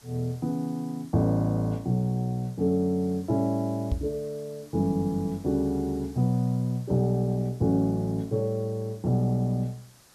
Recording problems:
background hiss; SNR 27 dB
knock on the microphone; at 4 s; peak +3 dB vs average level

